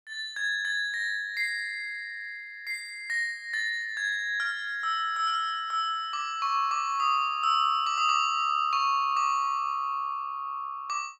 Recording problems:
none

